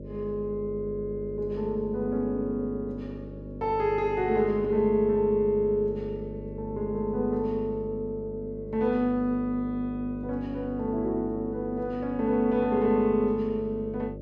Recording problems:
hum; 50 Hz, harmonics up to 600 Hz, SNR 12 dB

